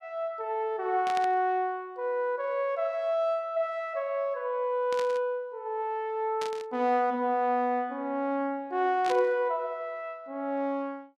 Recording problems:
burst of static; 4 times, first at 1 s; peak -5 dB vs average level

